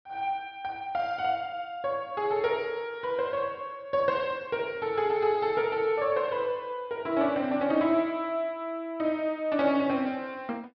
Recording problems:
low-pass filter; nothing above 5.5 kHz

